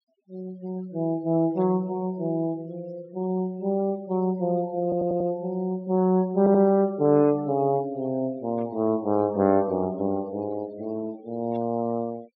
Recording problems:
treble cut off; nothing above 5.5 kHz
denoising artefacts; signal-to-artefact ratio 26 dB
static burst; at 1.5 s, at 8.5 s and at 12 s; peak -23 dB vs average level
stutter; at 5 s and at 6.5 s

